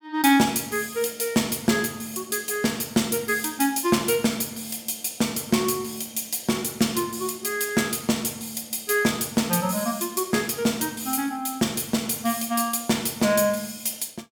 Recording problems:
none

